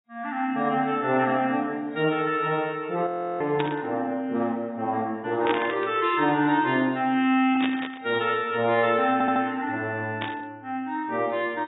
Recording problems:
codec artefacts; AAC, log-spectral distance 2 dB, nothing above 3.3 kHz
audio freezing; at 3 s
burst of static; 4 times, first at 3.5 s; peak 0 dB vs average level
audio stuttering; at 9 s

